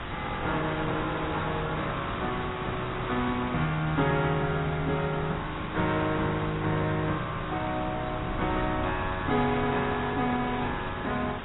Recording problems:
codec artefacts; AAC, log-spectral distance 14 dB, nothing above 3.5 kHz
background hiss; SNR 7 dB
wind on the microphone; below 200 Hz, SNR 13 dB

